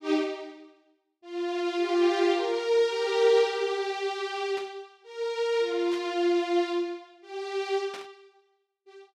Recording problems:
burst of static; at 4.5 s, at 6 s and at 8 s; peak -11 dB vs average level

